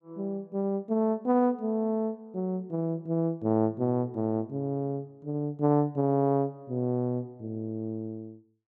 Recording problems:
none

